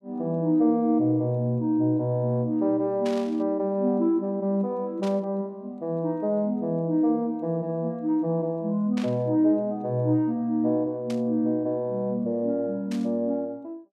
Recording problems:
burst of static; 5 times, first at 3 s; peak -9 dB vs average level

